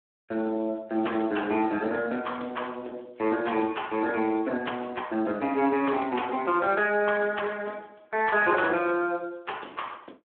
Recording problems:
phone line; 240 Hz to 3.4 kHz, Speex

